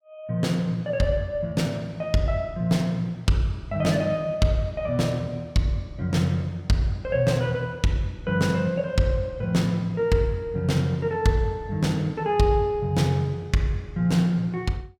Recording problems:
none

